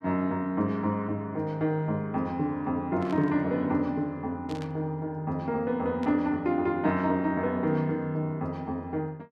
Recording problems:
burst of static; at 3 s, at 4.5 s and at 6 s; peak -12 dB vs average level

